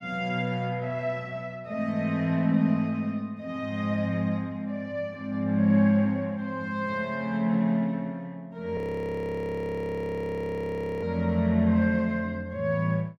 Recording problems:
frozen audio; at 9 s for 2.5 s

